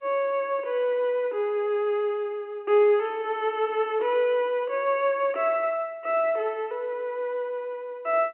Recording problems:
telephone audio; 260 Hz to 3.3 kHz, G.711

